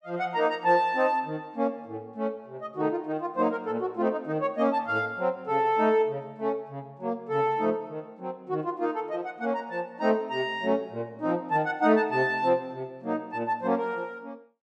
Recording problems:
none

